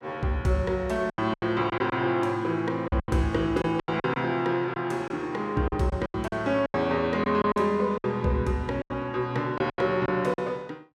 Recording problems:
packet loss; 11% of the sound replaced, filled with silence

